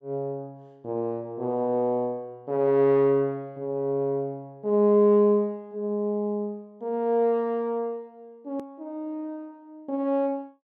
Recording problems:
click at an edit; at 8.5 s

